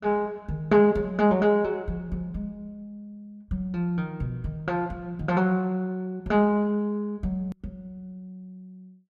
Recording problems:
click at an edit; at 7.5 s

